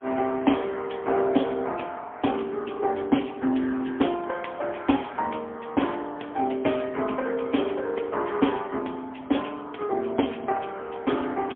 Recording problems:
telephone audio; 220 Hz to 3.4 kHz, AMR-NB, then MP3

